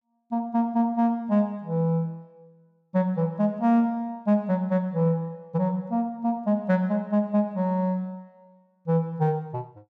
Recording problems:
none

